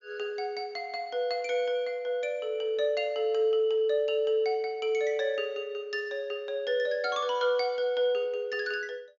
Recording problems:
treble cut off; nothing above 7 kHz

